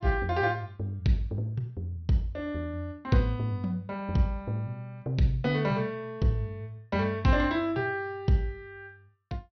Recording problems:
treble cut off; nothing above 6.1 kHz

